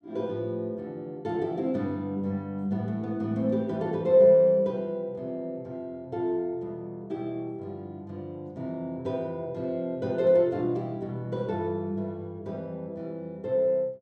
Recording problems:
none

